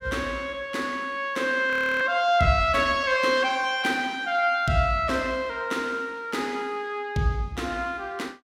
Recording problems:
frozen audio; at 1.5 s

